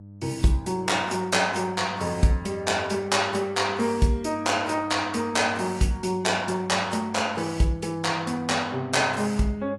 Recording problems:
codec artefacts; AAC, log-spectral distance 3 dB, nothing above 11 kHz
mains hum; 50 Hz, harmonics up to 600 Hz, SNR 19 dB

